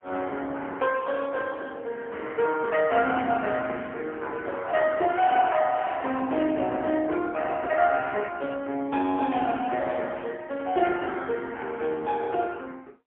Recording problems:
phone line; 260 Hz to 3.4 kHz, AMR-NB, then MP3

